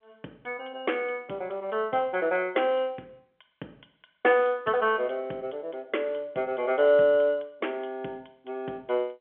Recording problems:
telephone audio; 190 Hz to 3.4 kHz, G.711

